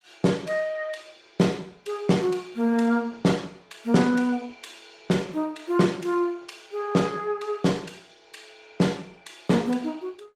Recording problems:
codec artefacts; Opus, log-spectral distance 4 dB

